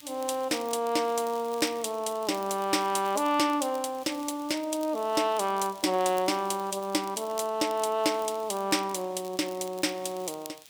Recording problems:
background hiss; SNR 23 dB
crackling; vinyl, SNR 21 dB

